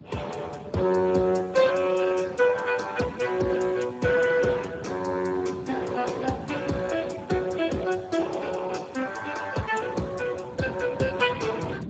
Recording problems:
codec artefacts; Speex, then Speex, log-spectral distance 5 dB, nothing above 7.6 kHz
wind noise; below 310 Hz, SNR 17 dB

